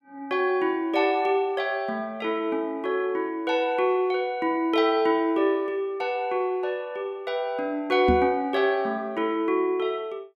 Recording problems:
microphone bump; at 8 s; peak +4 dB vs average level

